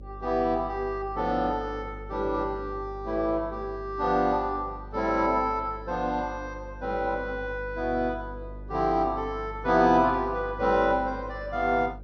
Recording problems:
low-pass filter; nothing above 6.2 kHz
electrical hum; 50 Hz, harmonics up to 600 Hz, SNR 15 dB

